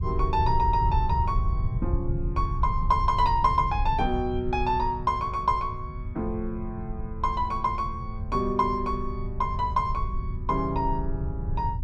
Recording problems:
low-frequency rumble; below 96 Hz, SNR 5 dB

